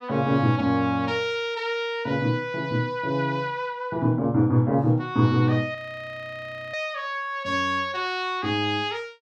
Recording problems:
audio freezing; at 6 s for 1 s

